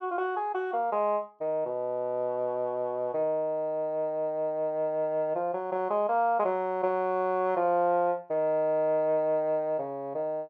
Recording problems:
none

